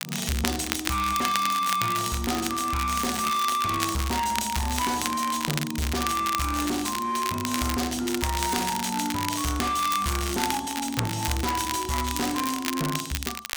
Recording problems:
distorted audio; hard clipping, uneven, signal-to-distortion ratio 8 dB
crackle; vinyl, SNR 5 dB

